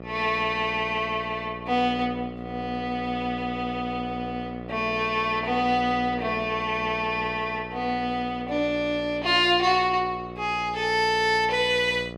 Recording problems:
hum; 60 Hz, harmonics up to 1.4 kHz, SNR 13 dB

